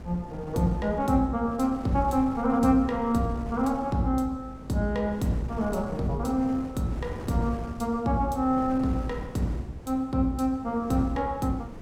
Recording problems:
wind noise; below 370 Hz, SNR 14 dB

